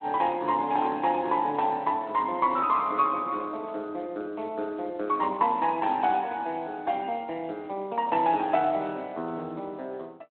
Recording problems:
phone line; 220 Hz to 3.4 kHz, Speex

